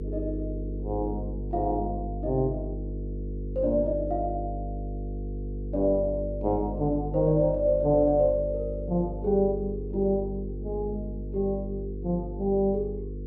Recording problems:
hum; 50 Hz, harmonics up to 500 Hz, SNR 7 dB

